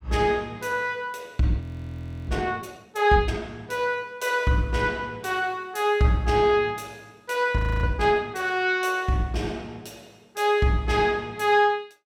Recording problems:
frozen audio; at 1.5 s for 0.5 s and at 7.5 s

